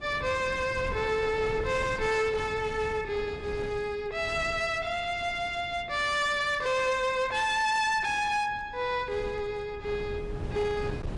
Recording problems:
lossy compression; MP3, log-spectral distance 2 dB
distorted audio; hard clipping, uneven, signal-to-distortion ratio 11 dB
wind noise; below 290 Hz, SNR 14 dB

